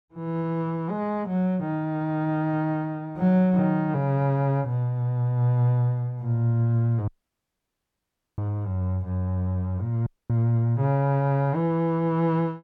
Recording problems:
dropout; at 7 s for 1.5 s and at 10 s

